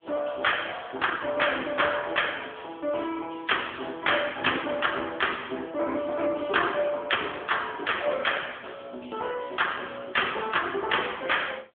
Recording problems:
phone line; 220 Hz to 3.4 kHz, AMR-NB
distorted audio; hard clipping, signal-to-distortion ratio 11 dB

